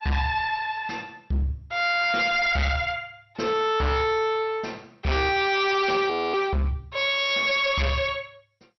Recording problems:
codec artefacts; MP2, log-spectral distance 3 dB, nothing above 5.7 kHz
distortion; hard clipping, uneven, signal-to-distortion ratio 7 dB
frozen audio; at 6 s

